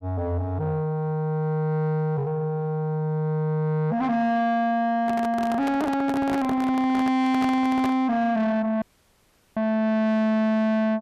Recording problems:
distorted audio; soft clipping, signal-to-distortion ratio 10 dB
handling noise; from 5 to 8 s; peak -1 dB vs average level
audio cutting out; at 9 s for 0.5 s

